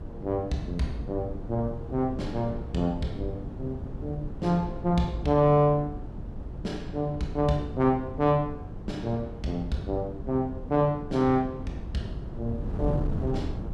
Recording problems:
wind on the microphone; below 200 Hz, SNR 9 dB

